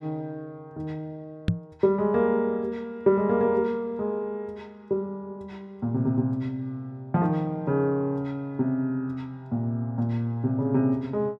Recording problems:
knock on the microphone; at 1.5 s; peak +7 dB vs average level

